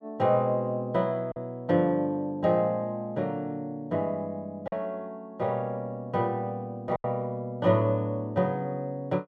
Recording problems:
packet loss; 1.7% of the sound replaced, filled with silence

